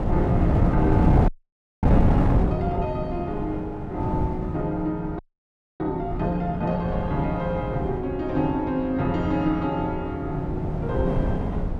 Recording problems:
wind noise; below 230 Hz, SNR -1 dB
frozen audio; at 1.5 s for 0.5 s and at 5 s for 0.5 s

